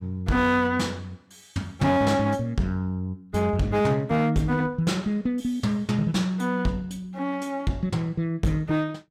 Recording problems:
distorted audio; hard clipping, signal-to-distortion ratio 12 dB

